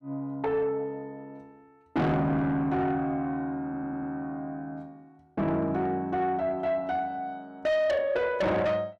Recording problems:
distortion; soft clipping, signal-to-distortion ratio 8 dB
audio stuttering; at 3.5 s

